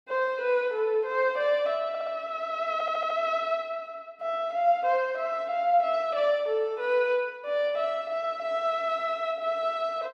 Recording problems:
audio stuttering; at 2 s and at 2.5 s

